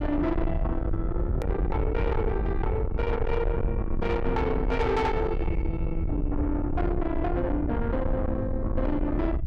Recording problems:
distortion; soft clipping, signal-to-distortion ratio 8 dB
low-frequency rumble; below 140 Hz, SNR 2 dB
hard cut with a click; at 1.5 s

